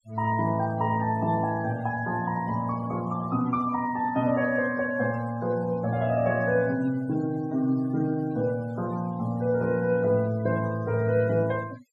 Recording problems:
noise reduction artefacts; signal-to-artefact ratio 21 dB

